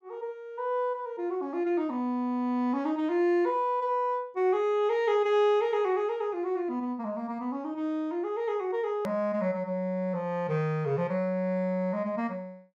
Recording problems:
edit click; at 9 s

